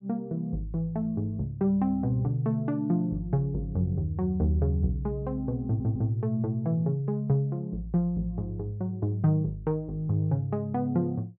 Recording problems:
stutter; at 5.5 s

